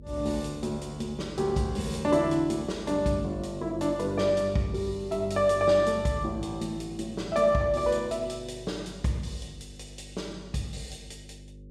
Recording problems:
hum; 50 Hz, harmonics up to 550 Hz, SNR 19 dB

